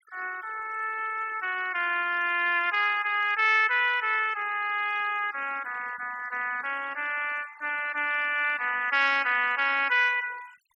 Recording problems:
denoising artefacts; signal-to-artefact ratio 22 dB

